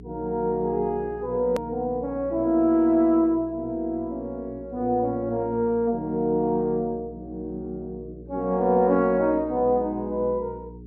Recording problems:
hum; 60 Hz, harmonics up to 420 Hz, SNR 19 dB
click at an edit; at 1.5 s

